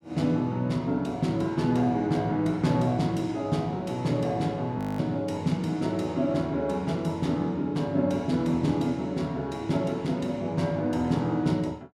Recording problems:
audio freezing; at 5 s

